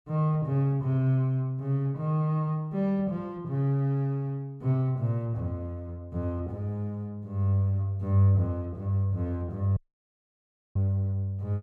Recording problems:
audio cutting out; at 10 s for 1 s

